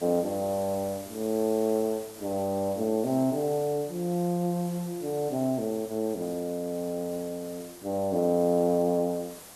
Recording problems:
background hiss; slope -3 dB per octave, SNR 17 dB

